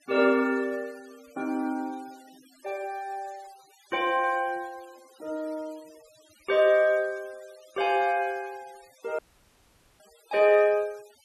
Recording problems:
noise reduction artefacts; signal-to-artefact ratio 27 dB
audio cutting out; at 9 s for 1 s

